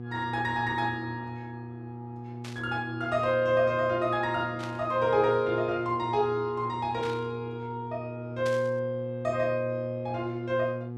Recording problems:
hum; 60 Hz, harmonics up to 840 Hz, SNR 10 dB
burst of static; 4 times, first at 2.5 s; peak -8 dB vs average level

